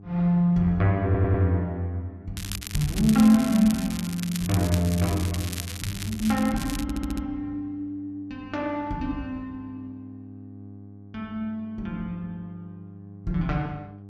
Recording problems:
mains hum; 50 Hz, harmonics up to 800 Hz, SNR 19 dB
audio stuttering; at 1 s and at 7 s
crackle; from 2.5 to 7 s; loose cable, SNR 11 dB

